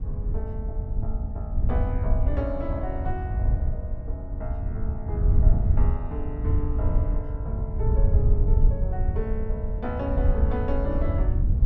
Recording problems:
wind noise; below 82 Hz, SNR -8 dB

